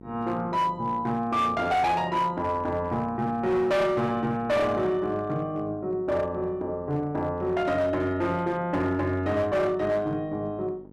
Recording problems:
distortion; hard clipping, uneven, signal-to-distortion ratio 10 dB
electrical hum; 50 Hz, harmonics up to 1 kHz, SNR 21 dB

